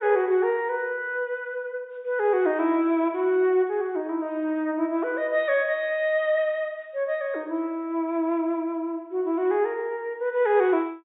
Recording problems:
low-pass filter; nothing above 4 kHz

